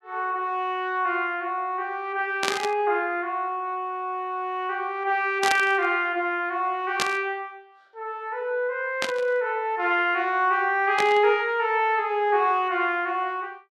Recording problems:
burst of static; 5 times, first at 2.5 s; peak +3 dB vs average level

